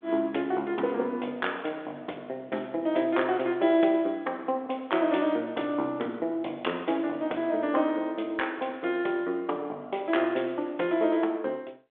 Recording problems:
phone line; 260 Hz to 3.5 kHz, G.726

